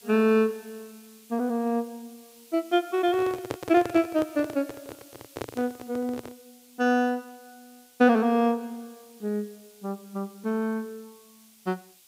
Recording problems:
hiss; SNR 25 dB
handling noise; from 3 to 6.5 s; peak -1 dB vs average level

